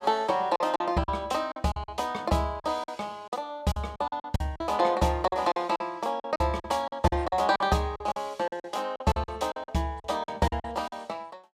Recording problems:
lost packets; 13% of the sound replaced, filled with silence

